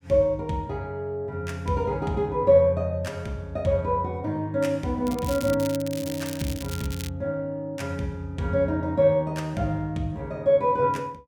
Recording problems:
crackling; from 5 to 7 s; loose cable, SNR 13 dB

